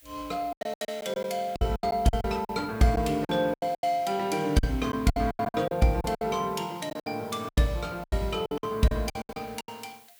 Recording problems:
hiss; SNR 25 dB
lost packets; 17% of the sound replaced, filled with silence

